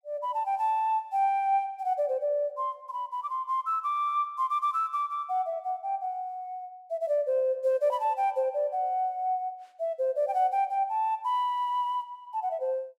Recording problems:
none

